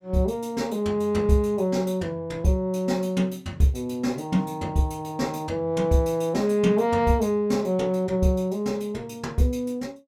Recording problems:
none

